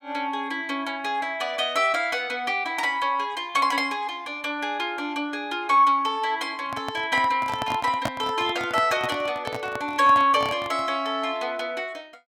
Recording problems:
handling noise; from 6.5 to 11 s; peak +2 dB vs average level

